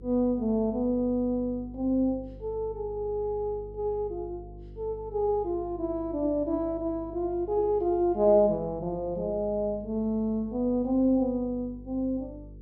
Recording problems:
electrical hum; 50 Hz, harmonics up to 500 Hz, SNR 18 dB

